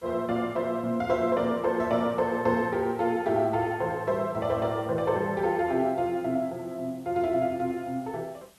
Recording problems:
background hiss; slope -2 dB per octave, SNR 29 dB

